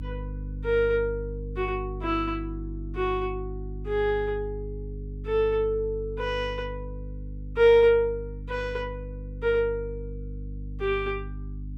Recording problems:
hum; 50 Hz, harmonics up to 300 Hz, SNR 11 dB

